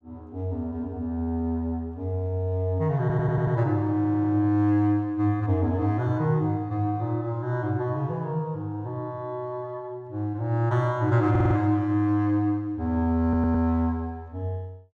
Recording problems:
stutter; 4 times, first at 3 s

